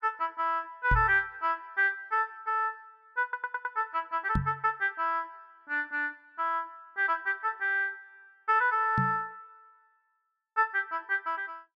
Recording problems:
microphone thump; at 1 s, at 4.5 s and at 9 s; peak +4 dB vs average level
audio stuttering; at 3 s

